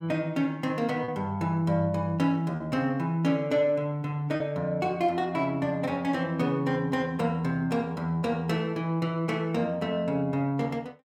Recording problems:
lost packets; 1.1% of the sound replaced, filled with repeated pitch periods

